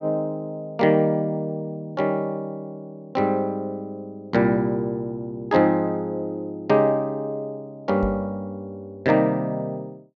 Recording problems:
treble cut off; nothing above 8 kHz
microphone thump; at 8 s; peak -4 dB vs average level

